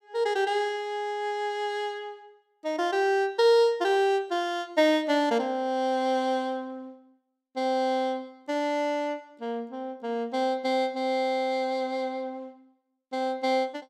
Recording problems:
none

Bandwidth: 16 kHz